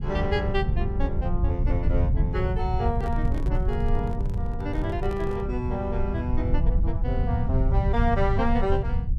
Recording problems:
rumble; below 96 Hz, SNR -2 dB
handling noise; from 3 to 5.5 s; peak -4 dB vs average level

